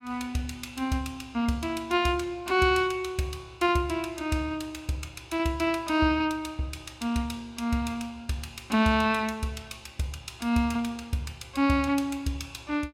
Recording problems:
none

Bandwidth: 16.5 kHz